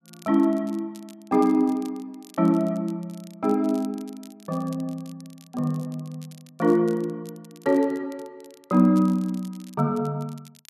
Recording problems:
crackle; vinyl, SNR 27 dB

